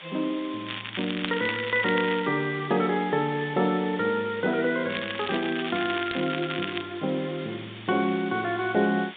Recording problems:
telephone audio; 150 Hz to 3.7 kHz, G.726
background hiss; SNR 15 dB
crackle; from 0.5 to 2.5 s and from 5 to 7 s; loose cable, SNR 8 dB

